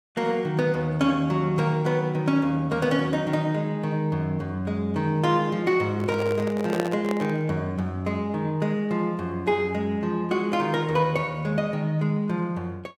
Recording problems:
handling noise; from 6 to 7.5 s; peak +2 dB vs average level

